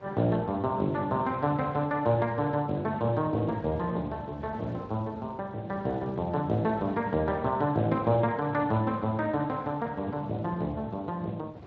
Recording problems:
lossy codec; Speex, log-spectral distance 3 dB
wind noise; below 540 Hz, SNR 20 dB

